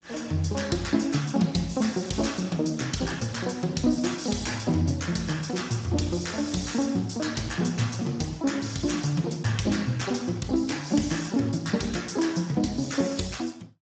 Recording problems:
codec artefacts; Speex, log-spectral distance 7 dB, nothing above 7.6 kHz

